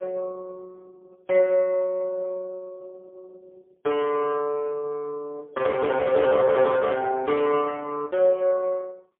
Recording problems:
telephone audio; 320 Hz to 3.3 kHz, AMR-NB, then MP3

